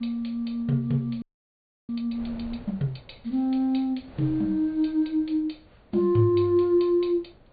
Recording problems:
treble missing; nothing above 4.6 kHz
wind noise; below 500 Hz, SNR 25 dB
audio freezing; at 1 s for 0.5 s

